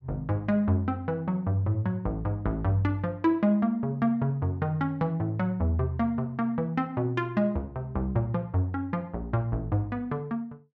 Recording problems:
none

